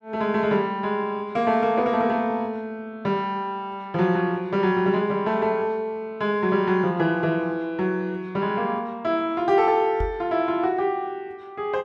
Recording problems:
microphone bump; at 10 s; peak -2 dB vs average level

